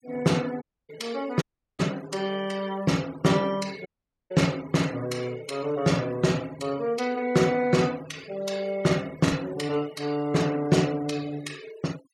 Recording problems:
noise reduction artefacts; signal-to-artefact ratio 20 dB
packet loss; 0.3% of the sound replaced, filled with the last packet
dropout; at 0.5 s, at 1.5 s and at 4 s

